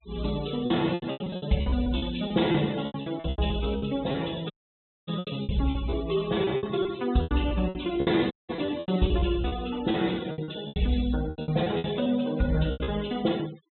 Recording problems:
treble cut off; nothing above 4 kHz
noise reduction artefacts; signal-to-artefact ratio 17 dB
packet loss; 16% of the sound replaced, filled with repeated pitch periods
audio cutting out; at 4.5 s for 0.5 s and at 8.5 s

